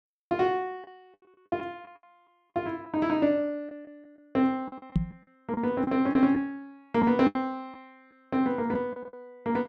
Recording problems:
packet loss; 8% of the sound replaced, filled with the last packet
microphone thump; at 5 s; peak +6 dB vs average level

